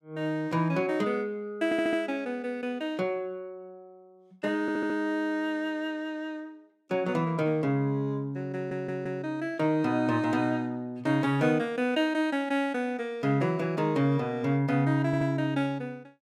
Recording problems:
audio stuttering; 4 times, first at 1.5 s

